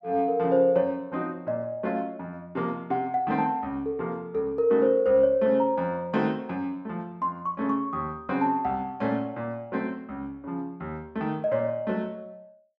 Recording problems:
none

